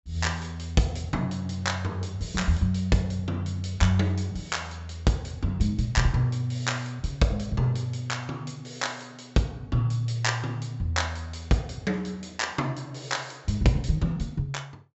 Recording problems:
treble missing; nothing above 7.6 kHz

